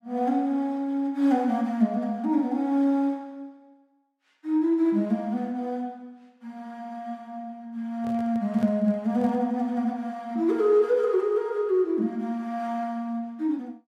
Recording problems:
microphone handling noise; from 8 to 9.5 s; peak -11 dB vs average level

